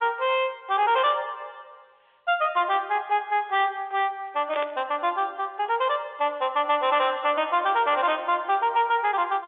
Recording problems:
phone line; 300 Hz to 3.6 kHz, G.711
distorted audio; soft clipping, signal-to-distortion ratio 11 dB
burst of static; at 1 s, at 4.5 s and at 8 s; peak -7 dB vs average level

